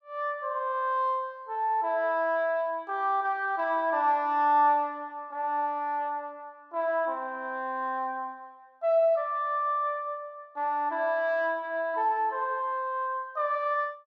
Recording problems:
none

